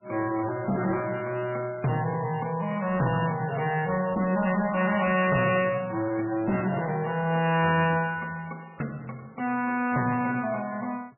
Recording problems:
lossy compression; MP3, log-spectral distance 4 dB, nothing above 2.4 kHz
distorted audio; hard clipping, uneven, signal-to-distortion ratio 11 dB

